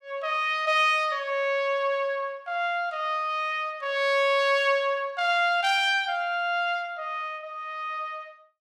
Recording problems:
none

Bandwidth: 15 kHz